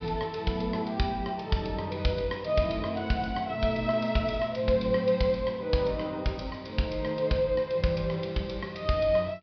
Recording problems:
treble cut off; nothing above 5.5 kHz

